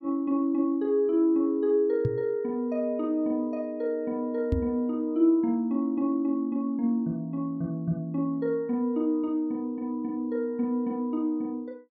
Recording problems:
knock on the microphone; at 2 s and at 4.5 s; peak +5 dB vs average level

